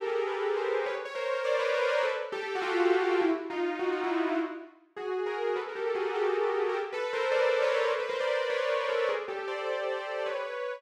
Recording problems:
none

